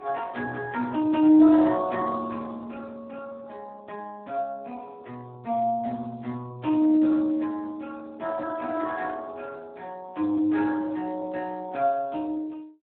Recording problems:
phone line; 130 Hz to 2.5 kHz, Speex

